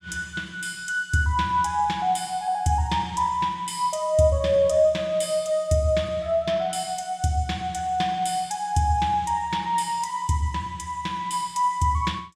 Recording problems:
none

